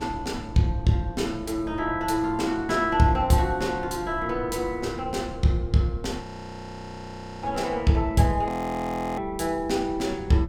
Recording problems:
wind on the microphone; below 150 Hz, SNR 16 dB
audio freezing; at 6 s for 1 s and at 8.5 s for 0.5 s

